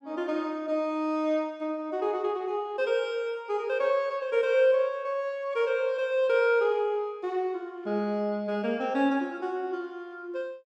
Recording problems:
none

